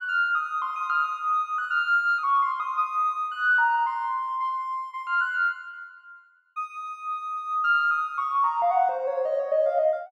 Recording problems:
none

